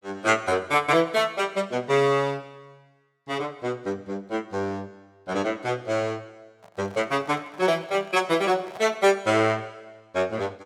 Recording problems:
microphone handling noise; from 6.5 to 9 s; peak -11 dB vs average level

